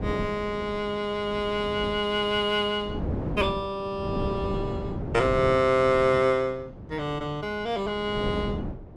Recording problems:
wind on the microphone; below 350 Hz, SNR 9 dB

